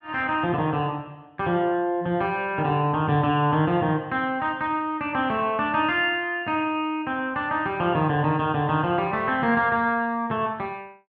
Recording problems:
none

